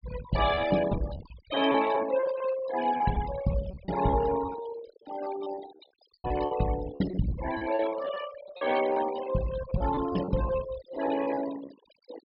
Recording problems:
treble cut off; nothing above 5.5 kHz
denoising artefacts; signal-to-artefact ratio 11 dB
packet loss; 13% of the sound replaced, filled with repeated pitch periods

